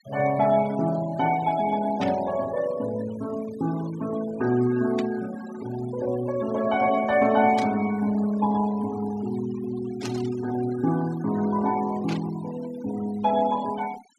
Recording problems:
denoising artefacts; signal-to-artefact ratio 18 dB
static burst; 5 times, first at 2 s; peak -5 dB vs average level

